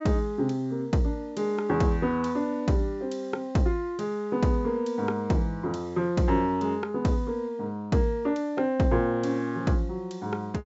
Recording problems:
treble cut off; nothing above 8 kHz

